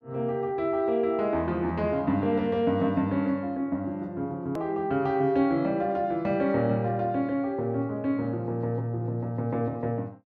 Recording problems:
click at an edit; at 4.5 s

